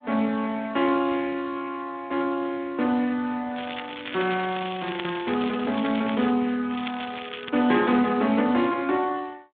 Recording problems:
telephone audio; 190 Hz to 3.6 kHz, Speex
crackling; from 3.5 to 6.5 s and at 6.5 s; loose cable, SNR 11 dB

